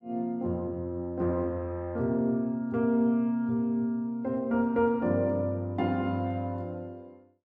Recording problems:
none

